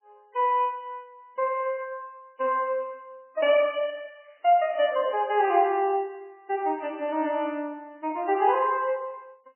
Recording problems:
lossy compression; MP3, log-spectral distance 3 dB, nothing above 2.7 kHz

